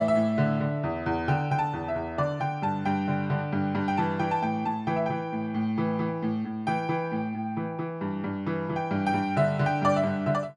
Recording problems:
none

